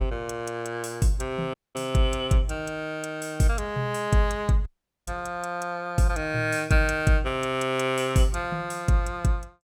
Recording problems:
audio cutting out; at 1.5 s and at 4.5 s

